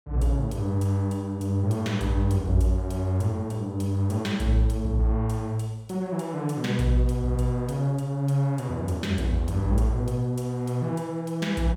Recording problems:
none

